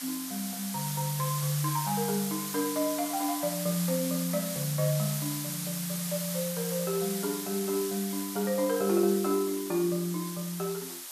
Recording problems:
hiss; SNR 4 dB
crackle; from 0.5 to 1.5 s; loose cable, SNR 25 dB

